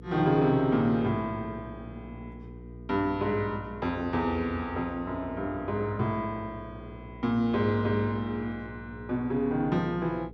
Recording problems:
electrical hum; 60 Hz, harmonics up to 480 Hz, SNR 16 dB

